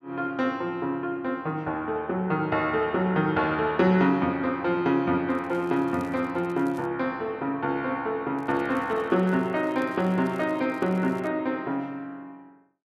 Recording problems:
crackling; from 5.5 to 7 s and from 8.5 to 11 s; loose cable, SNR 30 dB

